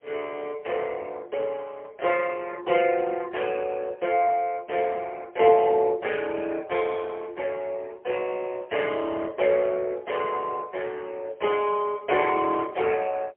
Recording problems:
phone line; 340 Hz to 3.3 kHz, AMR-NB, then MP3

